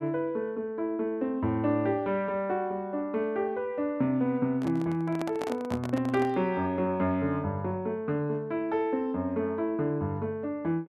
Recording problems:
microphone handling noise; from 4.5 to 6.5 s; peak -2 dB vs average level

